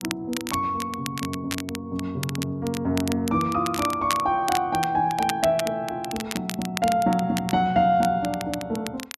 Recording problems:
crackling; vinyl, SNR 10 dB

